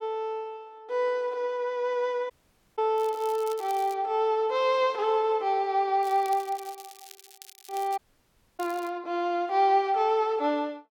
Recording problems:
audio cutting out; at 2.5 s and at 8 s for 0.5 s
crackle; at 3 s, from 6 to 8 s and at 8.5 s; loose cable, SNR 21 dB

